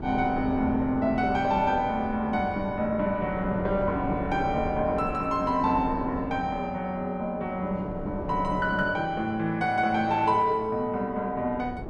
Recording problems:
wind noise; below 450 Hz, SNR 10 dB

